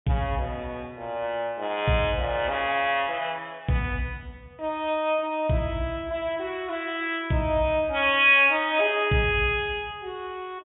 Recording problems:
treble missing; nothing above 3.6 kHz

